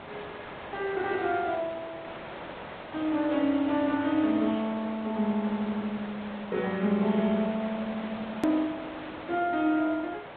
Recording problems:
low-pass filter; nothing above 4 kHz
lossy compression; Vorbis, then MP3, log-spectral distance 6 dB
hiss; SNR 12 dB
edit click; at 8.5 s

